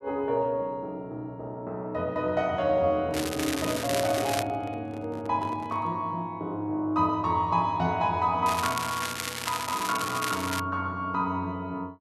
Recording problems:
handling noise; from 3 to 6 s; peak -7 dB vs average level
crackling; from 3 to 4.5 s and from 8.5 to 11 s; loose cable, SNR 5 dB

